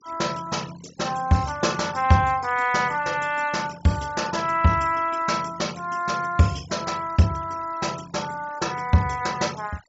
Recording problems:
treble missing; nothing above 8 kHz
denoising artefacts; signal-to-artefact ratio 19 dB

